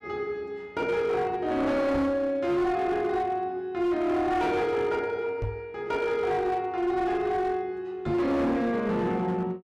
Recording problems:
distortion; hard clipping, signal-to-distortion ratio 11 dB
microphone bump; at 2 s, at 5.5 s and at 8 s; peak -1 dB vs average level

